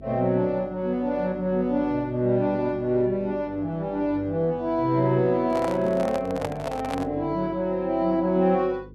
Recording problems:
electrical hum; 50 Hz, harmonics up to 450 Hz, SNR 21 dB
microphone handling noise; from 5.5 to 7 s; peak -2 dB vs average level

